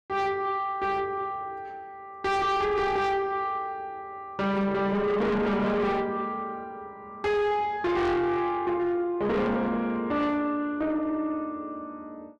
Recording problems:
distortion; soft clipping, signal-to-distortion ratio 7 dB

